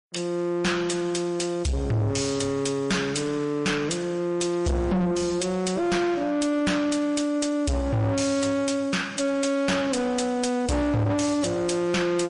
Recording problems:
lossy compression; MP3, log-spectral distance 3 dB, nothing above 9.5 kHz
distortion; soft clipping, signal-to-distortion ratio 7 dB

